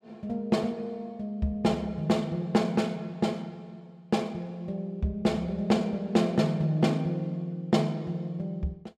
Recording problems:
none

